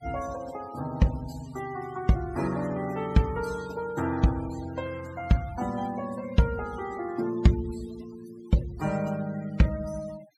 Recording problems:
denoising artefacts; signal-to-artefact ratio 19 dB

